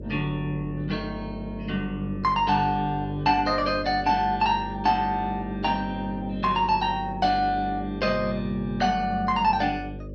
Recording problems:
hum; 50 Hz, harmonics up to 600 Hz, SNR 13 dB

